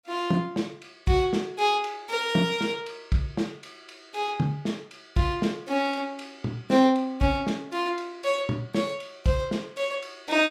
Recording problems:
none

